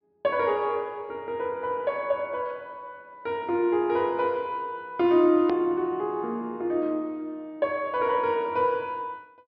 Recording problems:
treble missing; nothing above 5.5 kHz
hard cut with a click; at 5.5 s

